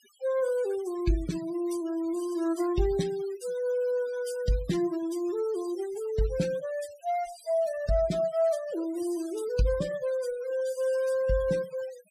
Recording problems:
denoising artefacts; signal-to-artefact ratio 18 dB

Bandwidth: 15 kHz